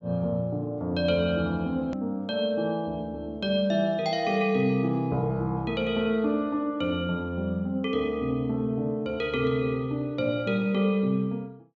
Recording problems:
low-pass filter; nothing above 8 kHz
hard cut with a click; at 2 s

